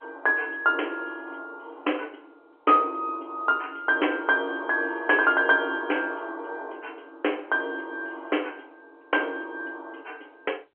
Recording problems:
telephone audio; 260 Hz to 3.2 kHz, G.711

